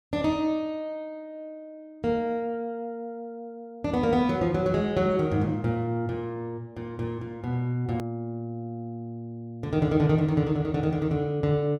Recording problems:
click at an edit; at 8 s

